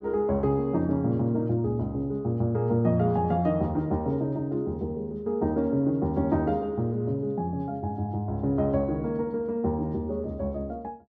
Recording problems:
none

